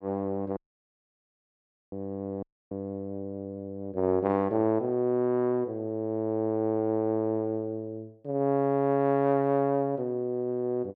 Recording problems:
dropout; at 0.5 s for 1.5 s and at 2.5 s

